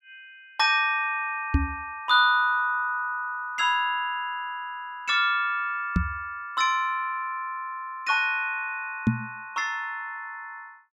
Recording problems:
microphone thump; at 1.5 s, at 6 s and at 9 s; peak +8 dB vs average level

